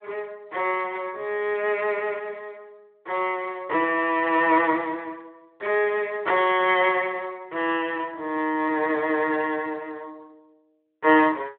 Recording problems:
telephone audio; 260 Hz to 3.5 kHz, Speex

